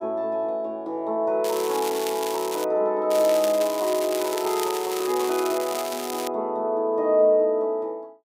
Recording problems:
crackle; from 1.5 to 2.5 s and from 3 to 6.5 s; loose cable, SNR 10 dB

